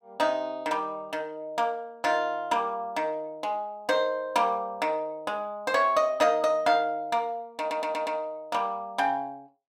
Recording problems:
stutter; at 7.5 s

